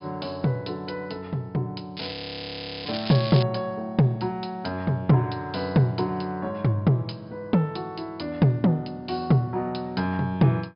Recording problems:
treble missing; nothing above 5.1 kHz
crackle; from 2 to 3.5 s; loose cable, SNR 9 dB
frozen audio; at 2 s for 0.5 s

